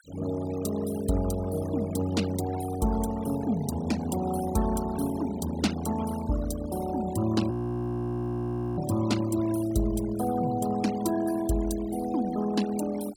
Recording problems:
denoising artefacts; signal-to-artefact ratio 14 dB
frozen audio; at 7.5 s for 1.5 s

